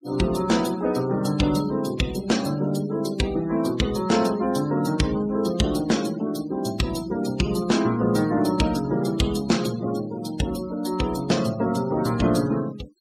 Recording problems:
denoising artefacts; signal-to-artefact ratio 16 dB

